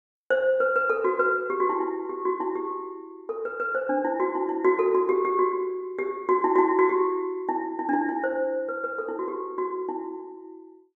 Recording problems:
none

